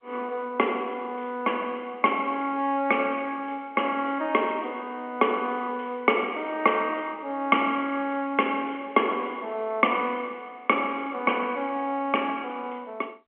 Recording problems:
phone line; 240 Hz to 3.2 kHz, G.711

